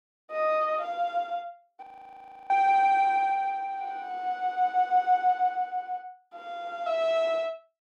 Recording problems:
frozen audio; at 2 s for 0.5 s

